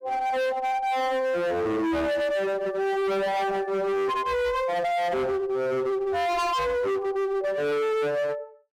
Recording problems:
distortion; hard clipping, uneven, signal-to-distortion ratio 6 dB

